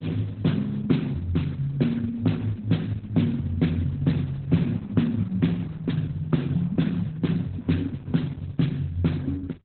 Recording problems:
codec artefacts; Opus, then Opus, log-spectral distance 3 dB, nothing above 4 kHz

